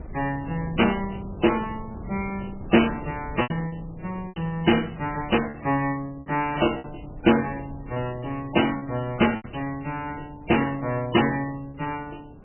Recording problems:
lossy compression; MP3, log-spectral distance 6 dB, nothing above 3 kHz
wind noise; below 250 Hz, SNR 17 dB
packet loss; 5% of the sound replaced, filled with repeated pitch periods

